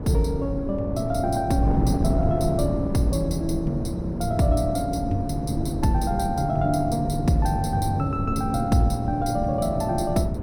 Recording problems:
wind on the microphone; below 260 Hz, SNR 4 dB

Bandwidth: 17 kHz